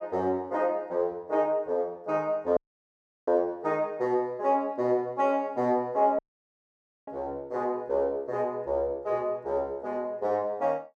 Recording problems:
dropout; at 2.5 s for 0.5 s and at 6 s for 1 s

